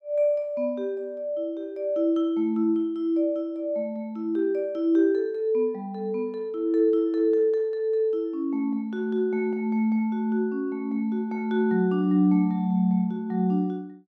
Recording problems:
none

